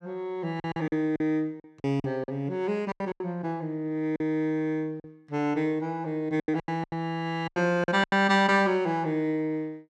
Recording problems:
lost packets; 10% of the sound replaced, filled with silence

